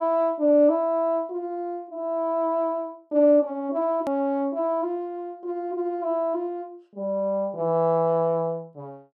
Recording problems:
edit click; at 4 s

